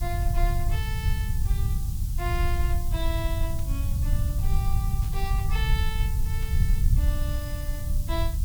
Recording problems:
hum; 60 Hz, harmonics up to 300 Hz, SNR 17 dB
background hiss; SNR 6 dB
rumble; below 82 Hz, SNR -9 dB
static burst; at 3.5 s, at 5 s and at 6.5 s; peak -8 dB vs average level

